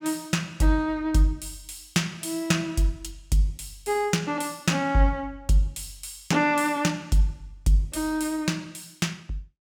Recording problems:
none

